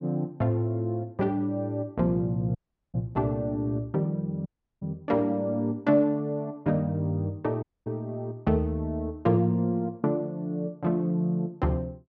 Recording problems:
dropout; at 2.5 s, at 4.5 s and at 7.5 s

